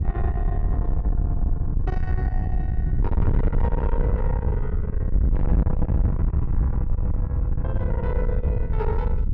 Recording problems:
distorted audio; soft clipping, signal-to-distortion ratio 7 dB
wind noise; below 92 Hz, SNR -7 dB

